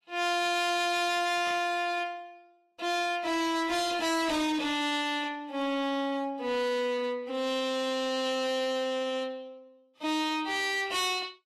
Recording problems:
codec artefacts; Vorbis, log-spectral distance 3 dB, nothing above 13.1 kHz
distorted audio; hard clipping, signal-to-distortion ratio 8 dB
burst of static; at 1.5 s; peak -7 dB vs average level

